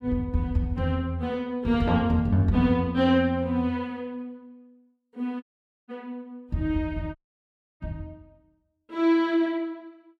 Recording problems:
audio cutting out; at 5.5 s and at 7 s for 0.5 s

